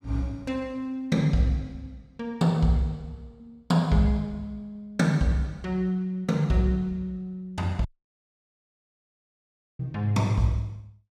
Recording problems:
dropout; at 8 s for 2 s

